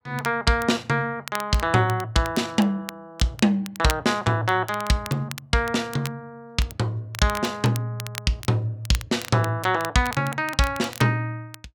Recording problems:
crackle; vinyl, SNR 15 dB

